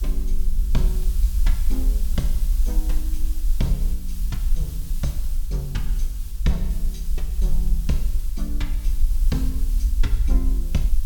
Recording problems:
background hiss; SNR 10 dB
low-frequency rumble; below 46 Hz, SNR -6 dB

